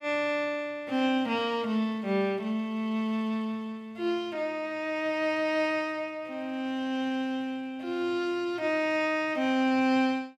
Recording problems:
none

